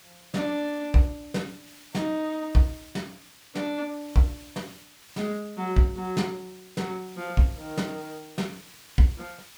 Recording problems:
hiss; slope +1 dB per octave, SNR 21 dB

